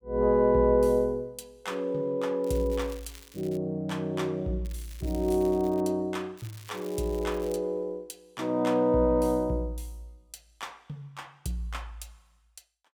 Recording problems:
crackle; from 2.5 to 3.5 s, from 4.5 to 6 s and from 6.5 to 7.5 s; loose cable, SNR 23 dB

